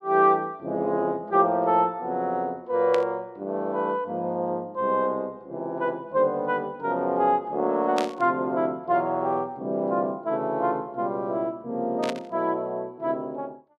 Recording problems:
static burst; at 3 s, at 8 s and at 12 s; peak -2 dB vs average level

